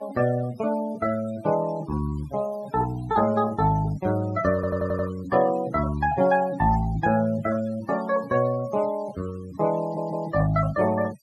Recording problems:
denoising artefacts; signal-to-artefact ratio 19 dB
stutter; at 4.5 s and at 10 s

